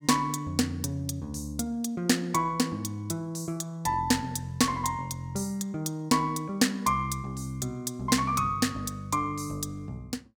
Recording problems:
none

